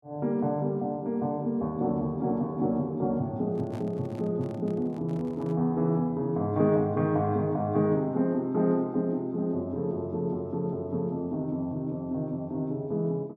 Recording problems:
microphone handling noise; from 3.5 to 5.5 s; peak -12 dB vs average level

